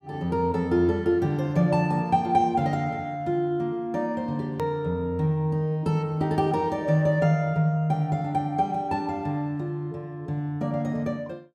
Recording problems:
click at an edit; at 4.5 s

